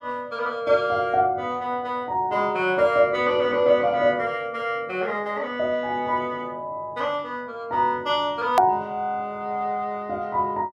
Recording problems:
click at an edit; at 8.5 s

